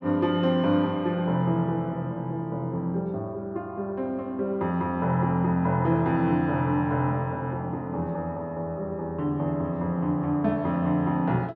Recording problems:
none

